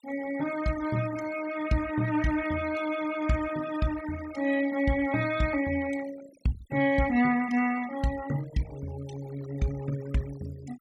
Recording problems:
noise reduction artefacts; signal-to-artefact ratio 15 dB

